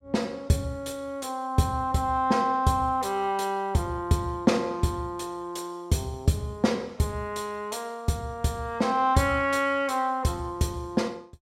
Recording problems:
none

